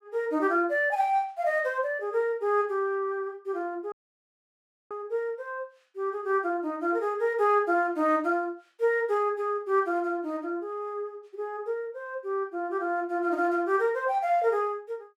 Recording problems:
audio cutting out; at 4 s for 1 s

